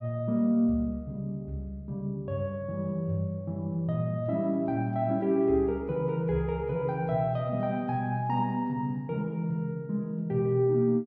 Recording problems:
none

